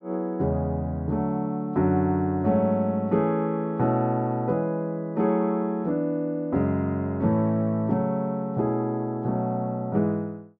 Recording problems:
none

